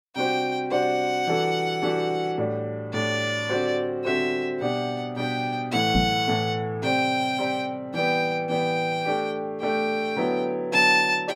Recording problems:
knock on the microphone; at 6 s; peak +4 dB vs average level

